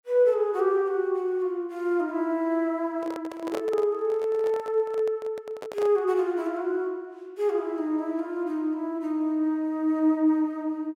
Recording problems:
microphone handling noise; from 3 to 6 s; peak -2 dB vs average level

